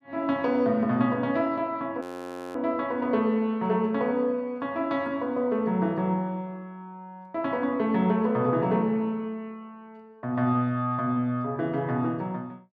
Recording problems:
audio freezing; at 2 s for 0.5 s

